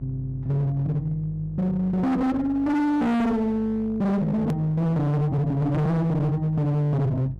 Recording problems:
distorted audio; hard clipping, signal-to-distortion ratio 6 dB
electrical hum; 50 Hz, harmonics up to 550 Hz, SNR 17 dB
hard cut with a click; at 4.5 s

